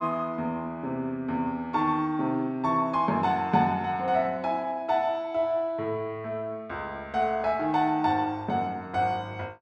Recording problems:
none

